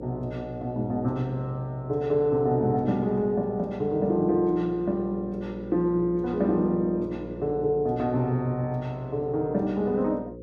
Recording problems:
hum; 60 Hz, harmonics up to 540 Hz, SNR 14 dB

